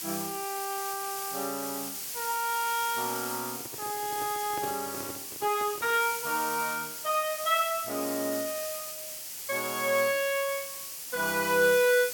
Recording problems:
hiss; SNR 5 dB
microphone handling noise; from 3.5 to 6 s; peak -6 dB vs average level

